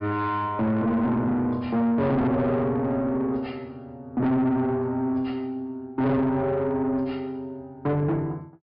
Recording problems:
treble cut off; nothing above 5.5 kHz
distortion; soft clipping, signal-to-distortion ratio 7 dB

